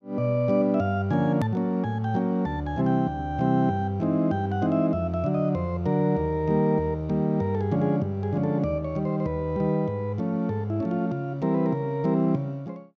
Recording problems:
click at an edit; at 1.5 s

